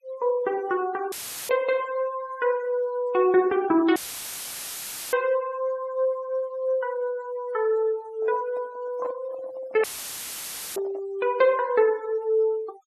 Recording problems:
noise reduction artefacts; signal-to-artefact ratio 24 dB
audio cutting out; at 1 s, at 4 s for 1 s and at 10 s for 1 s; filled with static
microphone handling noise; from 8 to 11 s; peak -10 dB vs average level

